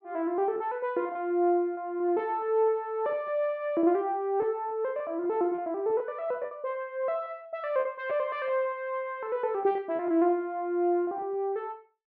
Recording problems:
packet loss; 7% of the sound replaced, filled with repeated pitch periods

